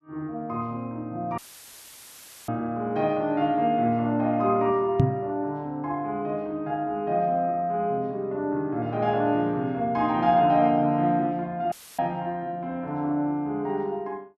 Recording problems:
audio cutting out; at 1.5 s for 1 s and at 12 s; filled with static
microphone bump; at 5 s; peak +8 dB vs average level

